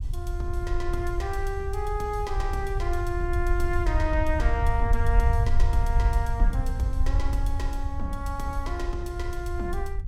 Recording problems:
rumble; below 66 Hz, SNR -3 dB

